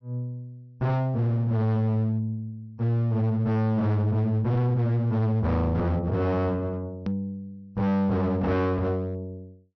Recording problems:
treble cut off; nothing above 6 kHz
distorted audio; hard clipping, uneven, signal-to-distortion ratio 7 dB
hard cut with a click; at 7 s

